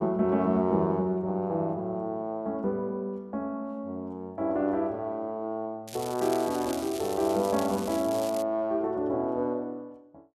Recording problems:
crackling; from 6 to 8.5 s; loose cable, SNR 13 dB

